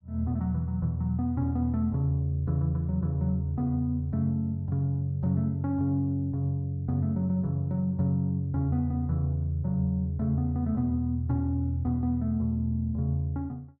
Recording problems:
none

